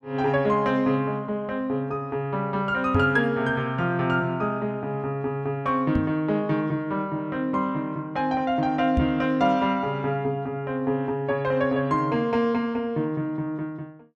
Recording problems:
microphone bump; at 3 s, at 6 s and at 9 s; peak +3 dB vs average level

